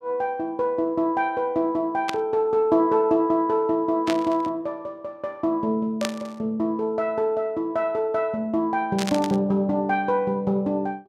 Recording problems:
static burst; 4 times, first at 2 s; peak 0 dB vs average level

